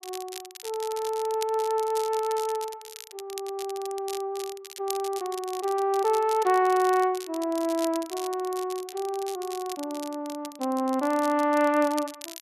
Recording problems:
crackle; vinyl, SNR 14 dB

